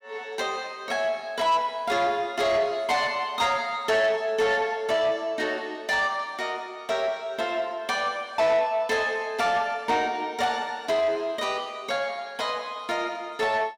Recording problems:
distorted audio; soft clipping, signal-to-distortion ratio 12 dB

